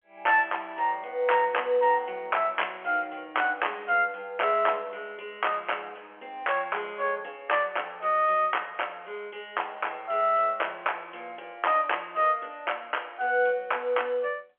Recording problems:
telephone audio; 340 Hz to 3.2 kHz, G.711

